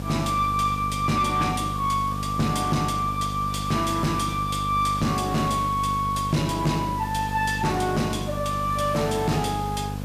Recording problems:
distorted audio; soft clipping, signal-to-distortion ratio 10 dB
electrical hum; 50 Hz, harmonics up to 1 kHz, SNR 7 dB
background hiss; slope -3 dB per octave, SNR 16 dB

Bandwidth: 14.5 kHz